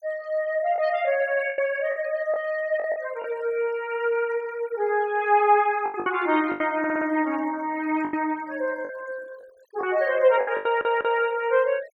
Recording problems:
noise reduction artefacts; signal-to-artefact ratio 24 dB
packet loss; 7% of the sound replaced, filled with the last packet
audio stuttering; at 7 s and at 11 s

